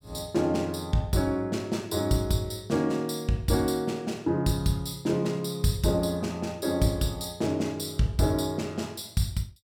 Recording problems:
none

